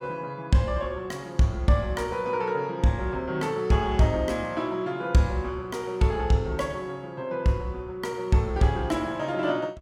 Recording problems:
none

